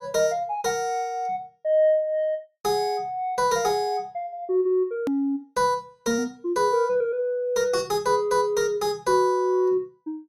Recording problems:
click at an edit; at 5 s

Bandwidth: 15 kHz